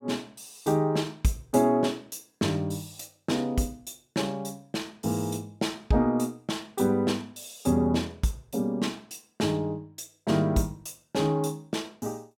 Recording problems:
none

